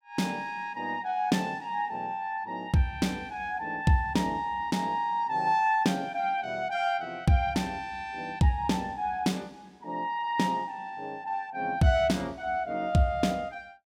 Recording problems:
none

